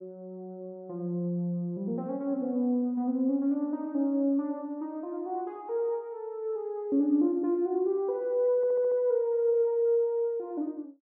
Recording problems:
audio stuttering; at 8.5 s

